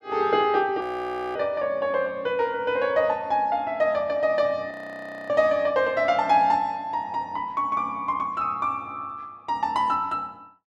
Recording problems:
audio freezing; at 1 s for 0.5 s and at 4.5 s for 0.5 s

